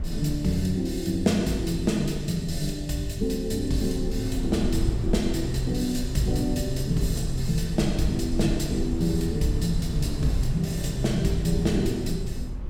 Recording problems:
rumble; below 56 Hz, SNR 12 dB
wind on the microphone; below 120 Hz, SNR 7 dB

